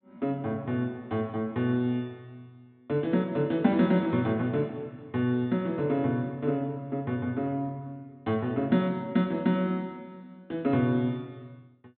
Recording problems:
treble cut off; nothing above 4 kHz

